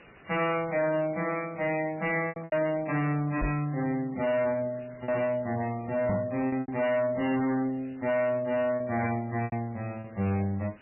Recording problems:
lossy compression; MP3, log-spectral distance 7 dB
distortion; hard clipping, uneven, signal-to-distortion ratio 10 dB
hiss; SNR 24 dB
lost packets; 5% of the sound replaced, filled with repeated pitch periods
knock on the microphone; at 3.5 s and at 6 s; peak +3 dB vs average level

